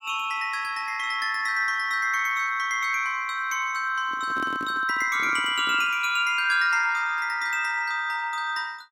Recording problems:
handling noise; from 4 to 6 s; peak -7 dB vs average level

